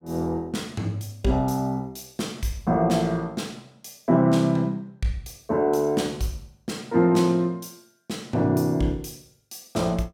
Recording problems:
none

